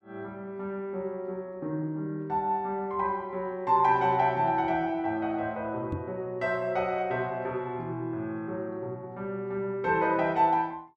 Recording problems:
microphone thump; at 6 s; peak -1 dB vs average level

